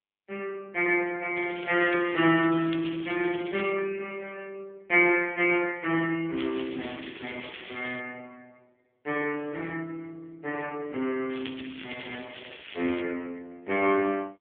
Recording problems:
telephone audio; 220 Hz to 3.2 kHz, AMR-NB
crackle; from 1.5 to 3.5 s, from 6.5 to 8 s and from 11 to 13 s; loose cable, SNR 14 dB

